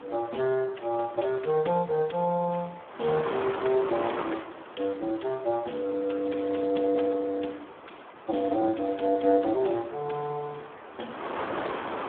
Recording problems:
phone line; 240 Hz to 4 kHz, Speex
wind noise; below 1.3 kHz, SNR 11 dB

